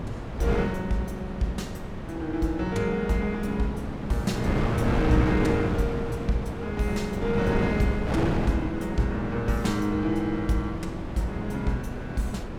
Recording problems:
hum; 60 Hz, harmonics up to 720 Hz, SNR 24 dB
wind on the microphone; below 460 Hz, SNR 3 dB

